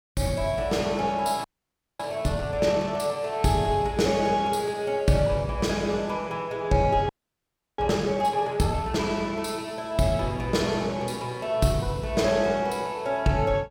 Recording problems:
frozen audio; at 1.5 s for 0.5 s and at 7 s for 0.5 s

